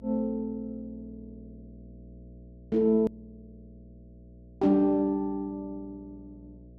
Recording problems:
hum; 60 Hz, harmonics up to 660 Hz, SNR 23 dB
hard cut with a click; at 3 s

